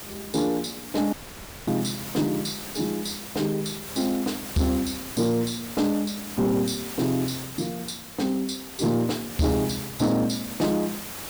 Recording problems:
distorted audio; soft clipping, signal-to-distortion ratio 12 dB
background hiss; slope -2 dB per octave, SNR 10 dB
dropout; at 1 s for 0.5 s

